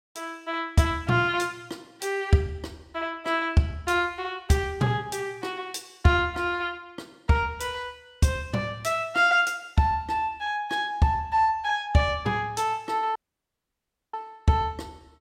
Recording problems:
dropout; at 13 s for 1 s

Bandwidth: 16 kHz